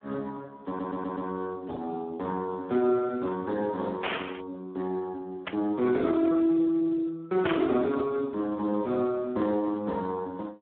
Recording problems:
phone line; 220 Hz to 2.1 kHz, Speex
stutter; at 0.5 s
burst of static; at 4 s, at 5.5 s and at 7.5 s; peak +3 dB vs average level

